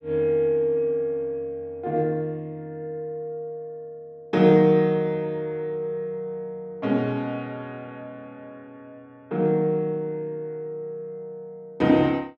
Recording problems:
none

